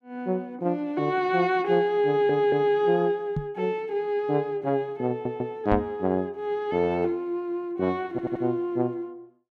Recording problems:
stutter; at 2 s, at 5 s and at 8 s
microphone bump; at 3.5 s and at 5.5 s; peak +1 dB vs average level

